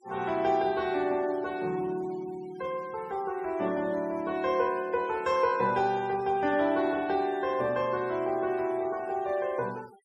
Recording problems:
noise reduction artefacts; signal-to-artefact ratio 23 dB

